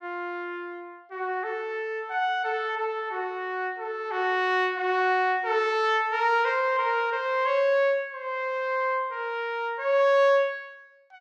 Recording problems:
none

